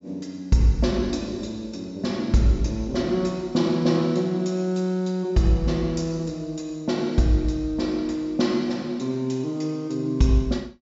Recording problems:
low-pass filter; nothing above 8 kHz

